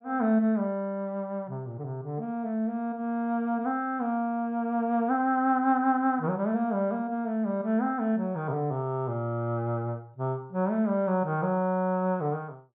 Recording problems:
low-pass filter; nothing above 4 kHz

